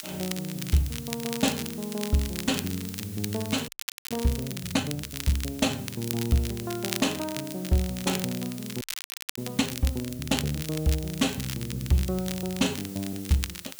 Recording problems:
hiss; SNR 14 dB
crackling; vinyl, SNR 8 dB
frozen audio; at 3.5 s and at 9 s for 0.5 s

